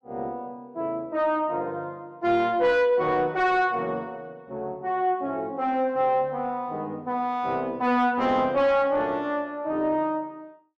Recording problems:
distortion; soft clipping, signal-to-distortion ratio 11 dB

